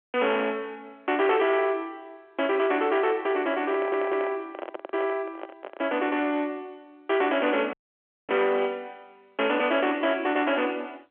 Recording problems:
telephone audio; 260 Hz to 3.3 kHz, G.711
distorted audio; soft clipping, signal-to-distortion ratio 11 dB
microphone handling noise; from 2.5 to 6 s; peak -5 dB vs average level
stutter; at 3.5 s
dropout; at 7.5 s for 0.5 s

